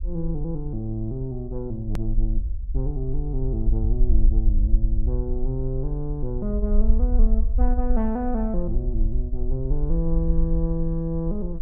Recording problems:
low-frequency rumble; below 46 Hz, strongest tone 24 Hz, SNR -2 dB
click at an edit; at 2 s

